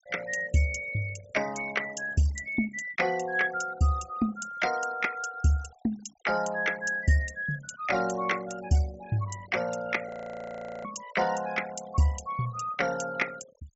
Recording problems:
low-pass filter; nothing above 8 kHz
noise reduction artefacts; signal-to-artefact ratio 18 dB
frozen audio; at 10 s for 1 s

